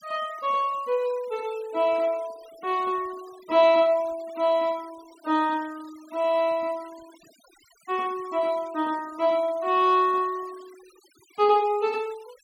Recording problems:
noise reduction artefacts; signal-to-artefact ratio 25 dB

